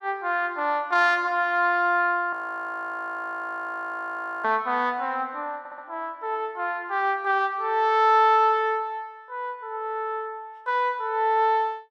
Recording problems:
frozen audio; at 2.5 s for 2 s
audio stuttering; at 5.5 s

